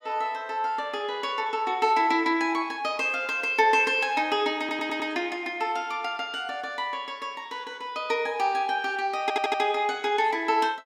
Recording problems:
stutter; at 4.5 s and at 9 s

